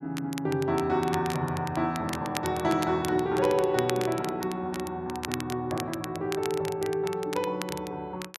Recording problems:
crackling; vinyl, SNR 12 dB

